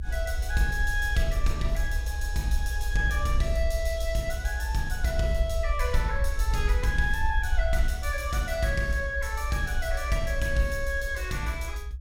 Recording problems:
low-frequency rumble; below 60 Hz, SNR 1 dB

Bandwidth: 16 kHz